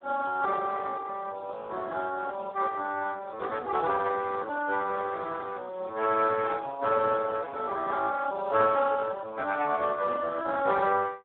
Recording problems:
phone line; 280 Hz to 2.7 kHz, Speex

